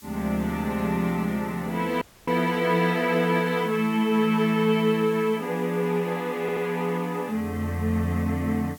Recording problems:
background hiss; slope +2 dB per octave, SNR 24 dB
dropout; at 2 s
stutter; at 6.5 s

